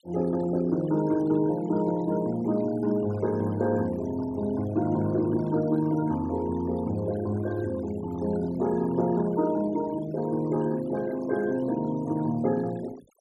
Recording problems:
denoising artefacts; signal-to-artefact ratio 20 dB

